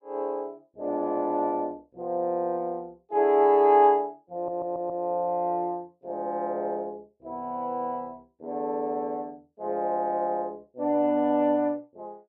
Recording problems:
stutter; at 4.5 s

